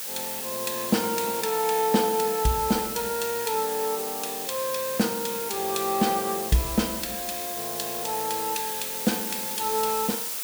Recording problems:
hiss; slope +2 dB per octave, SNR 3 dB

